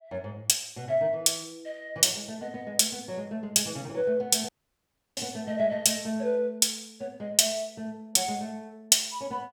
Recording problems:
audio cutting out; at 4.5 s for 0.5 s

